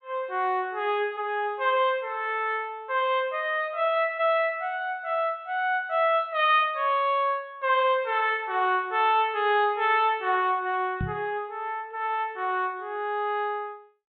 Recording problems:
treble missing; nothing above 4 kHz
knock on the microphone; at 11 s; peak -1 dB vs average level

